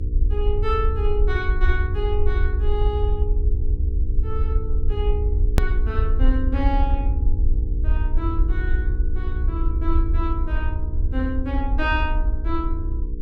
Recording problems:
hum; 60 Hz, harmonics up to 480 Hz, SNR 9 dB
low-frequency rumble; below 64 Hz, SNR -5 dB
edit click; at 5.5 s

